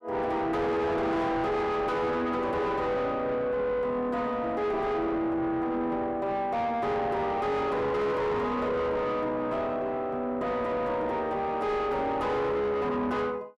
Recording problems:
distorted audio; soft clipping, signal-to-distortion ratio 5 dB

